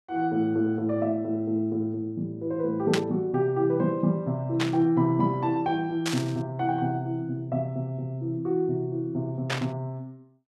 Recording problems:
static burst; 4 times, first at 3 s; peak +3 dB vs average level

